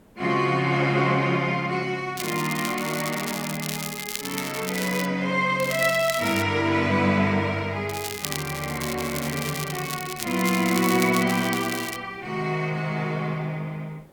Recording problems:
hiss; slope -8 dB per octave, SNR 28 dB
crackling; from 2 to 5 s, at 5.5 s and from 8 to 12 s; loose cable, SNR 8 dB

